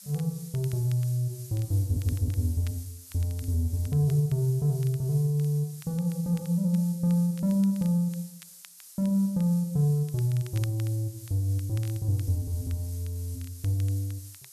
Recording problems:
background hiss; SNR 19 dB
crackle; vinyl, SNR 27 dB
stutter; at 2 s

